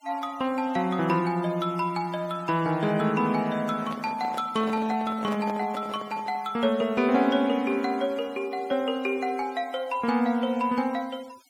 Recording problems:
noise reduction artefacts; signal-to-artefact ratio 23 dB
handling noise; from 3.5 to 6.5 s; peak -6 dB vs average level

